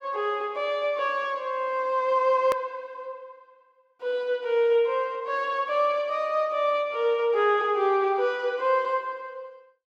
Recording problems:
edit click; at 2.5 s

